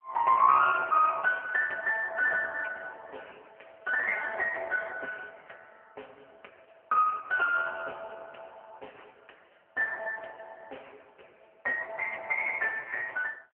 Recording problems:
telephone audio; 450 Hz to 2.2 kHz, AMR-NB

